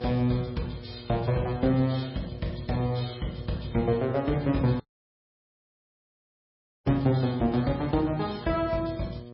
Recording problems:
codec artefacts; MP3, log-spectral distance 4 dB, nothing above 4.6 kHz
hum; 60 Hz, harmonics up to 1.2 kHz, SNR 17 dB
dropout; at 5 s for 2 s

